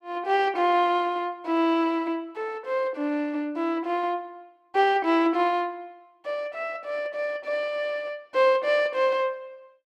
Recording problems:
none

